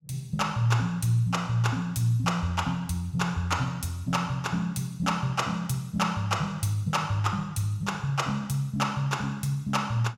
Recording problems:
none

